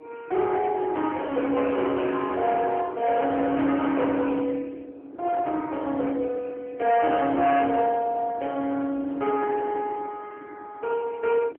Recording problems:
telephone audio; 240 Hz to 3.4 kHz, AMR-NB
distortion; hard clipping, signal-to-distortion ratio 11 dB
wind on the microphone; below 630 Hz, SNR 17 dB

